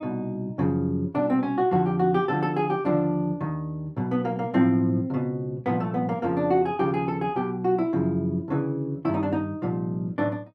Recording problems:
none

